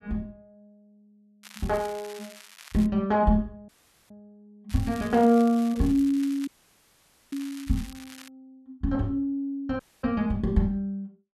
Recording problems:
crackle; from 1.5 to 3 s and from 4.5 to 8.5 s; loose cable, SNR 20 dB
audio cutting out; at 3.5 s, at 6.5 s for 1 s and at 10 s

